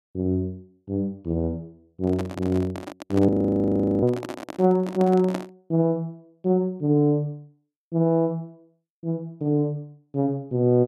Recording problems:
handling noise; from 2 to 5.5 s; peak -2 dB vs average level
frozen audio; at 3.5 s for 0.5 s

